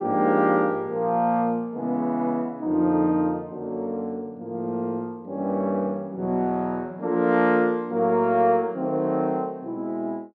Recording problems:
none

